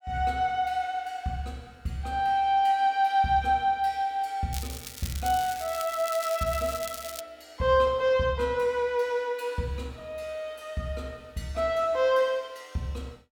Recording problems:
crackle; from 4.5 to 7 s; loose cable, SNR 12 dB

